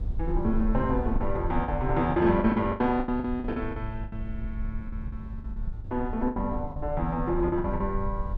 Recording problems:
rumble; below 62 Hz, SNR 8 dB
packet loss; 13% of the sound replaced, filled with the last packet

